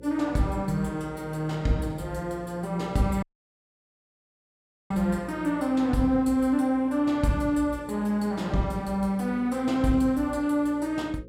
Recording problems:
electrical hum; 60 Hz, harmonics up to 540 Hz, SNR 20 dB
audio cutting out; at 3 s for 1.5 s

